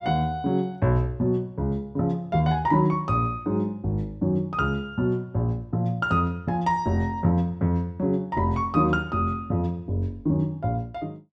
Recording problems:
none

